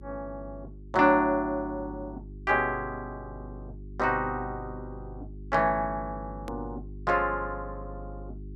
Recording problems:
hum; 50 Hz, harmonics up to 400 Hz, SNR 15 dB
hard cut with a click; at 6.5 s

